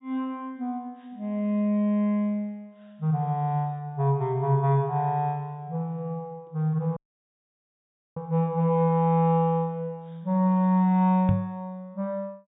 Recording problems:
treble cut off; nothing above 4 kHz
audio cutting out; at 7 s for 1 s
knock on the microphone; at 11 s; peak +5 dB vs average level

